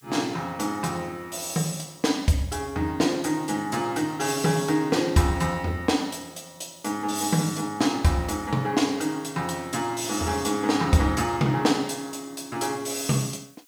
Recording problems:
background hiss; SNR 29 dB

